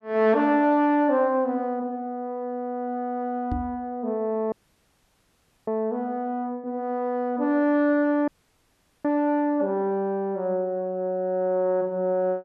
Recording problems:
microphone thump; at 3.5 s; peak -2 dB vs average level
audio cutting out; at 4.5 s for 1 s and at 8.5 s for 1 s

